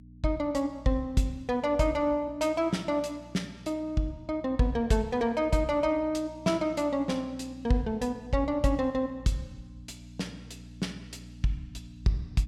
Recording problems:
hum; 60 Hz, harmonics up to 300 Hz, SNR 20 dB

